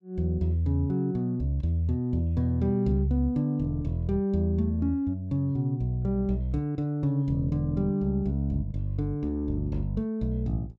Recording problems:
none

